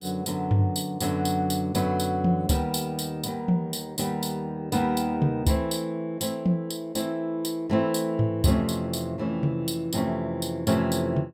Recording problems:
none

